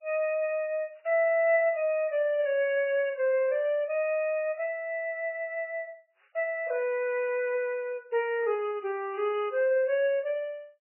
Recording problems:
codec artefacts; MP3, log-spectral distance 2 dB, nothing above 2.5 kHz

